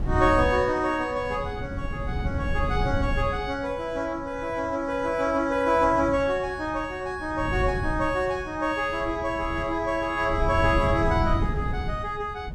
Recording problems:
wind on the microphone; below 140 Hz, SNR 6 dB

